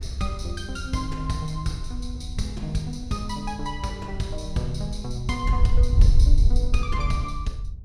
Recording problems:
wind noise; below 64 Hz, SNR -3 dB

